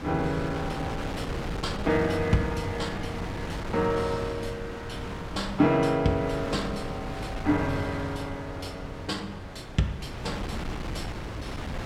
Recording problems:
wind noise; below 810 Hz, SNR 6 dB

